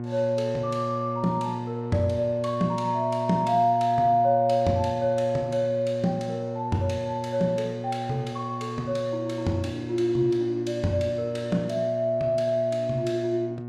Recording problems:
hum; 60 Hz, harmonics up to 1.1 kHz, SNR 8 dB

